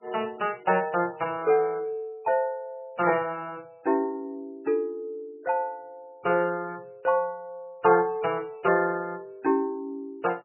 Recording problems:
lossy codec; MP3, log-spectral distance 3 dB, nothing above 2.4 kHz

